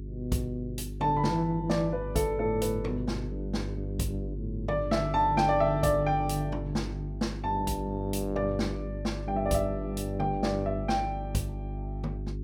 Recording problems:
hum; 50 Hz, harmonics up to 400 Hz, SNR 7 dB

